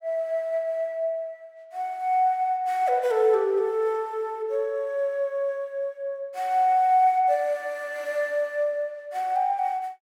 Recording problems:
none

